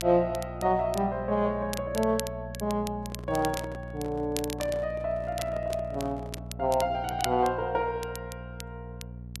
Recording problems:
hum; 60 Hz, harmonics up to 480 Hz, SNR 12 dB
crackle; vinyl, SNR 13 dB
handling noise; from 3 to 6.5 s; peak -9 dB vs average level

